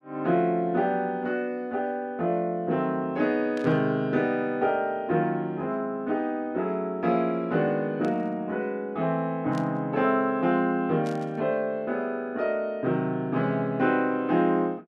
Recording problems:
burst of static; 4 times, first at 3.5 s; peak -13 dB vs average level

